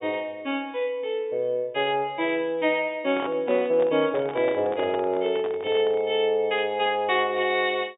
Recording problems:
low-pass filter; nothing above 3.7 kHz
microphone handling noise; from 3 to 6 s; peak -6 dB vs average level

